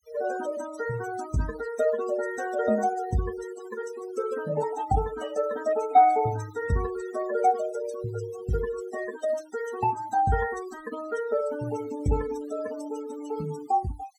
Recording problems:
noise reduction artefacts; signal-to-artefact ratio 14 dB

